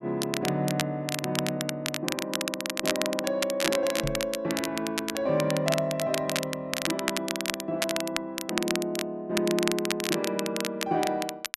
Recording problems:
crackle; vinyl, SNR 3 dB
microphone bump; at 4 s; peak 0 dB vs average level

